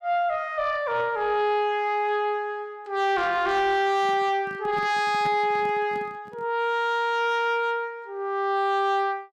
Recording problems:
distorted audio; soft clipping, signal-to-distortion ratio 10 dB
microphone handling noise; from 4 to 6.5 s; peak -8 dB vs average level

